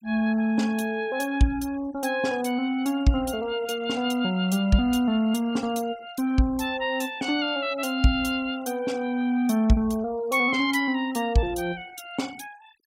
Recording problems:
noise reduction artefacts; signal-to-artefact ratio 23 dB

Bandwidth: 16 kHz